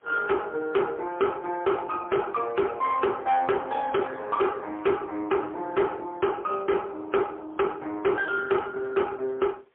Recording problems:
telephone audio; 260 Hz to 2.6 kHz, AMR-NB, then MP3
distorted audio; soft clipping, signal-to-distortion ratio 6 dB
background hiss; SNR 42 dB

